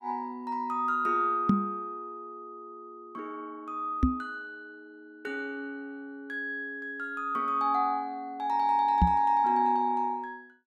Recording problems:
microphone bump; at 1.5 s, at 4 s and at 9 s; peak +9 dB vs average level

